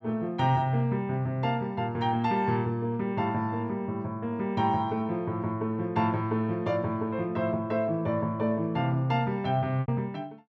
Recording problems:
lost packets; 0.8% of the sound replaced, filled with repeated pitch periods

